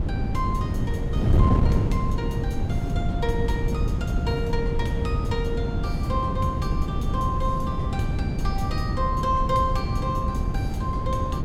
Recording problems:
wind on the microphone; below 180 Hz, SNR -4 dB

